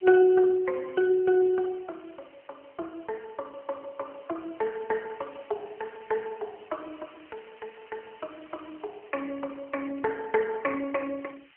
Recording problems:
phone line; 300 Hz to 2.3 kHz, AMR-NB
background hiss; SNR 27 dB

